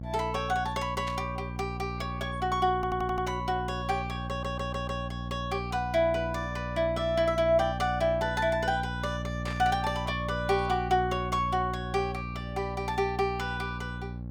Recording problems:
hum; 60 Hz, harmonics up to 600 Hz, SNR 7 dB
static burst; at 1 s and at 9.5 s; peak -7 dB vs average level
audio stuttering; at 3 s and at 4.5 s

